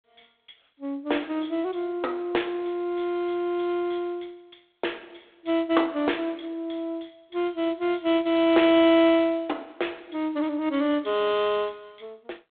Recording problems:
phone line; 240 Hz to 3.6 kHz, G.726

